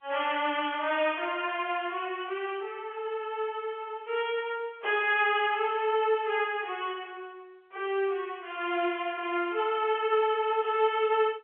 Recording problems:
telephone audio; 320 Hz to 3.3 kHz, G.711

